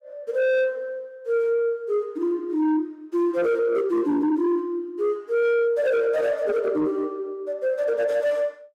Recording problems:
distortion; soft clipping, signal-to-distortion ratio 11 dB

